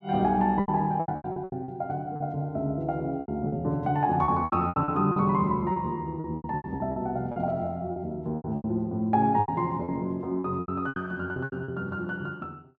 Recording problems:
lost packets; 15% of the sound replaced, filled with repeated pitch periods

